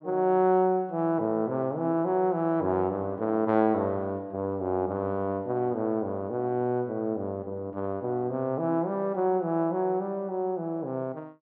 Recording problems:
none

